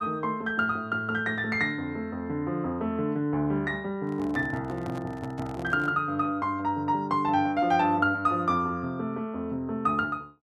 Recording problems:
handling noise; from 4 to 6 s; peak -8 dB vs average level

